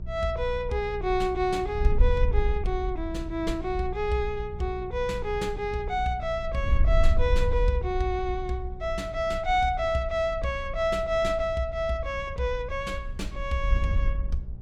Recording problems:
hum; 60 Hz, harmonics up to 600 Hz, SNR 16 dB
wind noise; below 62 Hz, SNR 4 dB

